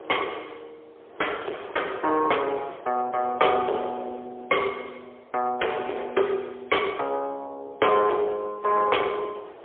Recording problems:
telephone audio; 320 Hz to 3.4 kHz, AMR-NB, then MP3
distorted audio; soft clipping, signal-to-distortion ratio 11 dB
wind noise; below 890 Hz, SNR 17 dB

